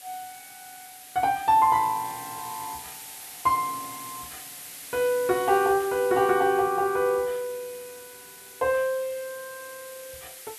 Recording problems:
hiss; slope +1 dB per octave, SNR 15 dB

